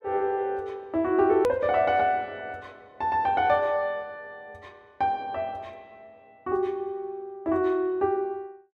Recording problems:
click at an edit; at 1.5 s

